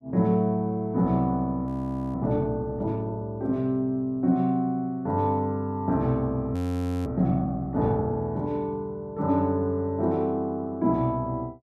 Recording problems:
frozen audio; at 1.5 s and at 6.5 s for 0.5 s

